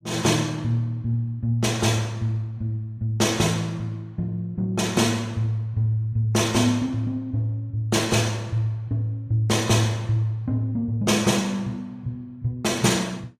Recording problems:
codec artefacts; AAC, log-spectral distance 2 dB, nothing above 15.1 kHz

